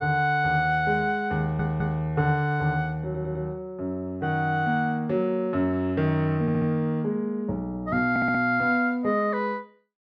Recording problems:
stutter; 4 times, first at 1.5 s

